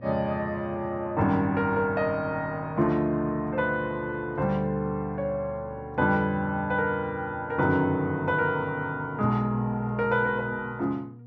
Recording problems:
mains hum; 60 Hz, harmonics up to 720 Hz, SNR 20 dB

